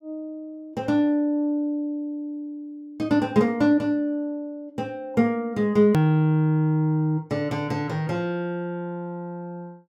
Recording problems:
edit click; at 6 s

